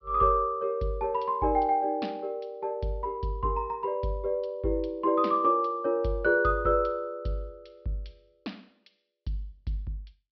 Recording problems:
treble missing; nothing above 5.5 kHz

